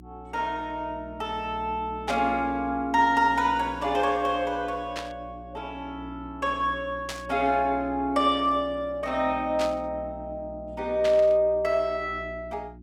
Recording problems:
hum; 60 Hz, harmonics up to 360 Hz, SNR 18 dB
burst of static; 5 times, first at 2 s; peak -4 dB vs average level

